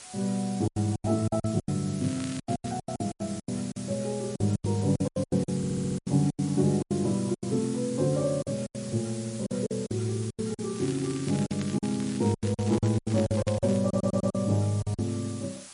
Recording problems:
lossy codec; MP3, log-spectral distance 10 dB
background hiss; slope +1 dB per octave, SNR 14 dB
packet loss; 16% of the sound replaced, filled with silence
crackling; at 2 s and from 11 to 14 s; loose cable, SNR 17 dB
audio stuttering; at 5.5 s and at 14 s

